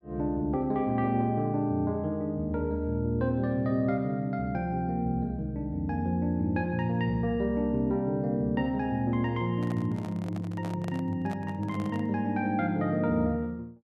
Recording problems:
handling noise; from 9.5 to 12 s; peak -8 dB vs average level

